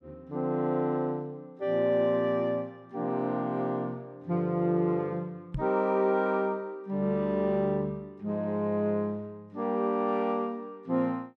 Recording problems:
microphone bump; at 5.5 s; peak -2 dB vs average level

